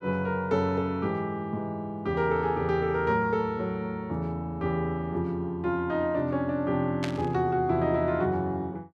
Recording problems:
burst of static; at 7 s; peak -2 dB vs average level

